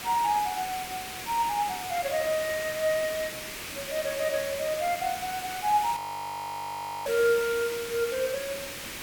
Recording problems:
hiss; SNR 7 dB
audio freezing; at 6 s for 1 s

